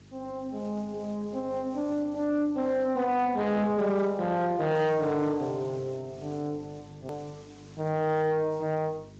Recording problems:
lossy compression; Speex, log-spectral distance 4 dB
distortion; soft clipping, signal-to-distortion ratio 10 dB
hum; 50 Hz, harmonics up to 450 Hz, SNR 22 dB
background hiss; slope -1 dB per octave, SNR 29 dB
edit click; at 7 s

